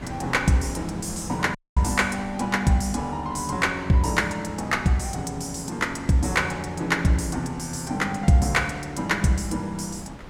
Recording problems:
wind noise; below 670 Hz, SNR 18 dB
audio cutting out; at 1.5 s

